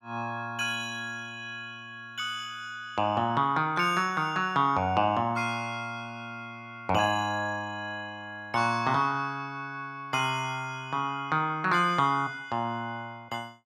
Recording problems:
none

